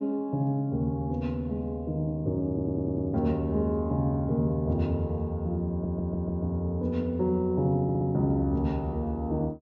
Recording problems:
treble missing; nothing above 7.1 kHz
stutter; at 2.5 s, at 5.5 s and at 8 s

